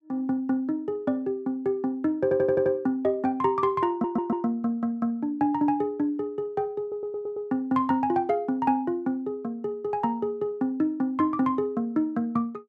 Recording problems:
audio stuttering; at 2 s, at 4 s and at 7 s

